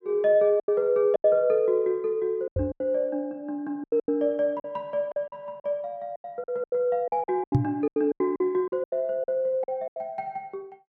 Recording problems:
lost packets; 14% of the sound replaced, filled with silence
microphone thump; at 2.5 s and at 7.5 s; peak +8 dB vs average level

